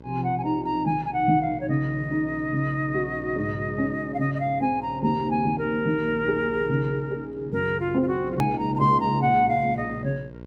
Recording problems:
hum; 60 Hz, harmonics up to 1.6 kHz, SNR 18 dB
edit click; at 8.5 s

